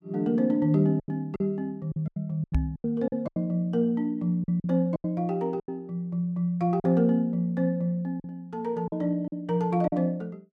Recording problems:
lost packets; 9% of the sound replaced, filled with silence
microphone bump; at 2.5 s; peak +5 dB vs average level

